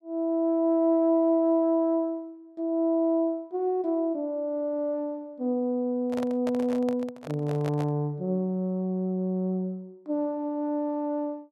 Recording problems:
handling noise; from 6 to 8 s; peak -5 dB vs average level

